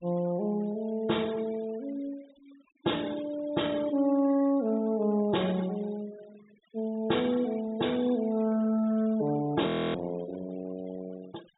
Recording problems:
treble cut off; nothing above 4 kHz
denoising artefacts; signal-to-artefact ratio 22 dB
audio freezing; at 9.5 s

